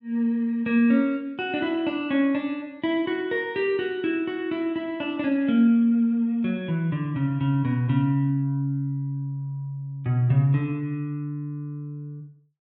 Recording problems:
none

